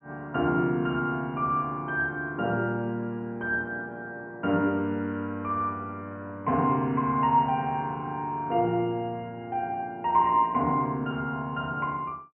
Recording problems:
treble cut off; nothing above 3.1 kHz

